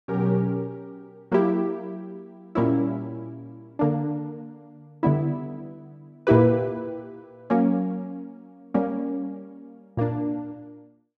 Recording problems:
none

